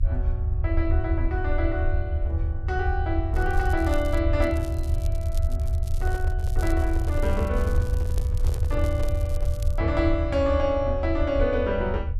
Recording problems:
low-frequency rumble; below 78 Hz, SNR -1 dB
crackle; at 3.5 s and from 4.5 to 10 s; loose cable, SNR 20 dB
microphone handling noise; from 6 to 9.5 s; peak -6 dB vs average level

